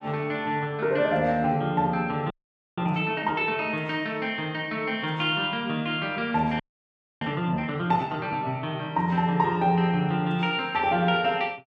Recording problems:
audio freezing; at 2.5 s and at 6.5 s for 0.5 s

